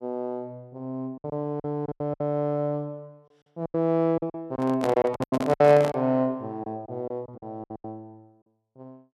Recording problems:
lost packets; 12% of the sound replaced, filled with silence
handling noise; from 4.5 to 6 s; peak 0 dB vs average level

